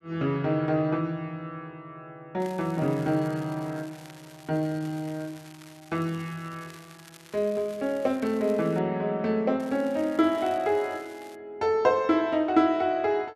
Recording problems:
crackle; from 2.5 to 9 s and from 9.5 to 11 s; loose cable, SNR 23 dB

